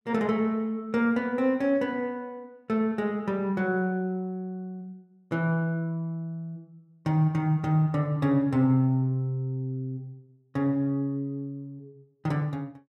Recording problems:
none

